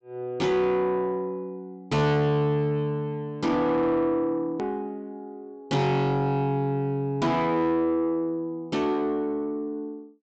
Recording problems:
treble missing; nothing above 8 kHz
distortion; soft clipping, signal-to-distortion ratio 11 dB
click at an edit; at 4.5 s

